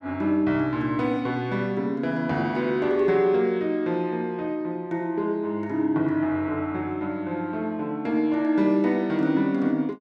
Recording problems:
none

